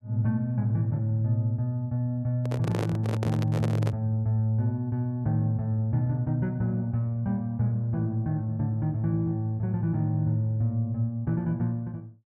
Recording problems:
handling noise; from 2.5 to 4 s; peak -2 dB vs average level

